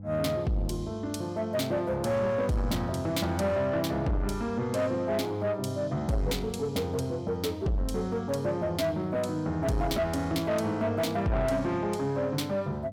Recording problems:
distortion; soft clipping, signal-to-distortion ratio 11 dB
mains hum; 50 Hz, harmonics up to 500 Hz, SNR 14 dB

